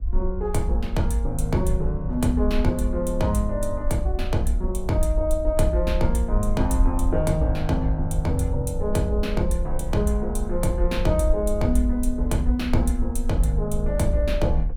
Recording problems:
low-frequency rumble; below 54 Hz, SNR 5 dB

